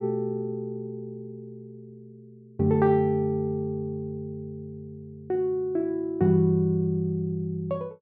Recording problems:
none

